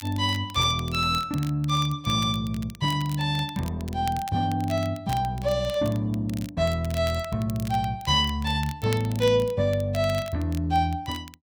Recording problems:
crackling; vinyl, SNR 19 dB

